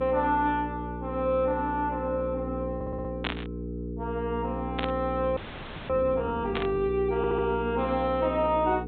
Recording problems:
treble missing; nothing above 4 kHz
hum; 60 Hz, harmonics up to 480 Hz, SNR 7 dB
stutter; at 3 s and at 7 s
burst of static; at 3 s, at 5 s and at 6.5 s; peak +3 dB vs average level
frozen audio; at 5.5 s for 0.5 s

